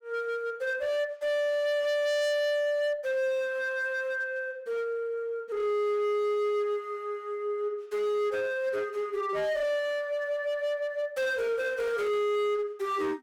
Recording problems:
distortion; hard clipping, uneven, signal-to-distortion ratio 7 dB

